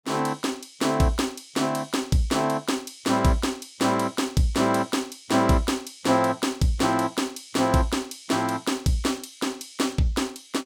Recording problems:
none

